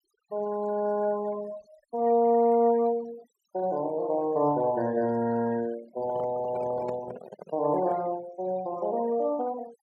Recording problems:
denoising artefacts; signal-to-artefact ratio 21 dB
handling noise; from 6 to 8 s; peak -7 dB vs average level

